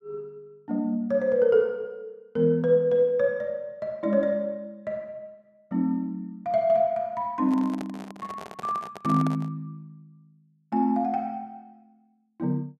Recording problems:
handling noise; from 7.5 to 9.5 s; peak -7 dB vs average level

